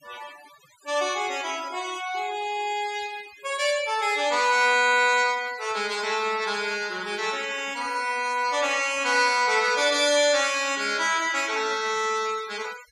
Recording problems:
denoising artefacts; signal-to-artefact ratio 19 dB

